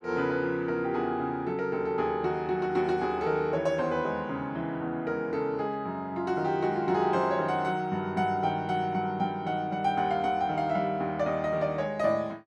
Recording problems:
none

